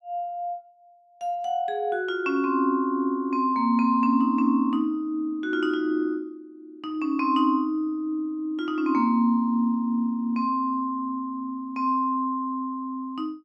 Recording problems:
none

